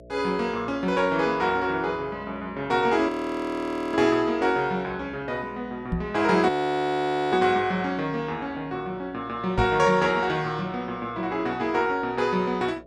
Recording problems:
hum; 60 Hz, harmonics up to 660 Hz, SNR 24 dB
frozen audio; at 3 s for 1 s and at 6.5 s for 1 s
microphone thump; at 6 s and at 9.5 s; peak +2 dB vs average level

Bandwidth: 12 kHz